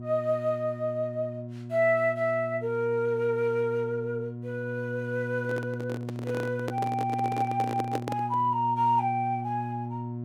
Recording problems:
hum; 60 Hz, harmonics up to 720 Hz, SNR 8 dB
handling noise; from 5.5 to 8.5 s; peak +1 dB vs average level

